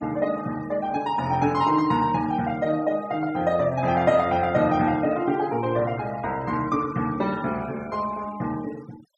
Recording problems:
noise reduction artefacts; signal-to-artefact ratio 20 dB

